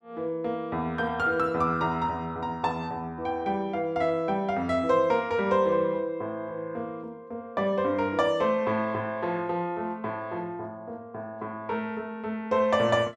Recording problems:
none

